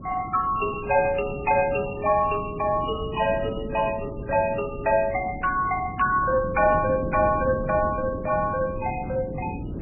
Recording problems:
lossy codec; MP3, log-spectral distance 3 dB, nothing above 2.5 kHz
wind noise; below 290 Hz, SNR 10 dB

